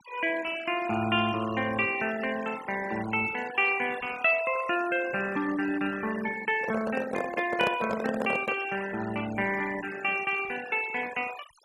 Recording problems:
denoising artefacts; signal-to-artefact ratio 13 dB
microphone handling noise; from 6.5 to 8.5 s; peak +1 dB vs average level

